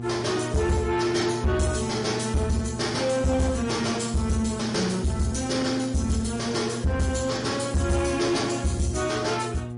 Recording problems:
lossy compression; MP3, log-spectral distance 4 dB, nothing above 10.4 kHz
distortion; soft clipping, signal-to-distortion ratio 12 dB
electrical hum; 60 Hz, harmonics up to 840 Hz, SNR 10 dB

